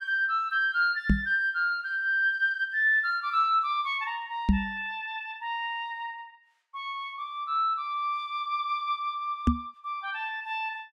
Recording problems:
microphone thump; at 1 s, at 4.5 s and at 9.5 s; peak +9 dB vs average level

